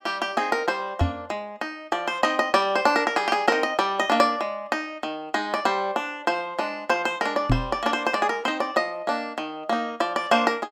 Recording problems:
microphone thump; at 1 s and at 7.5 s; peak +6 dB vs average level

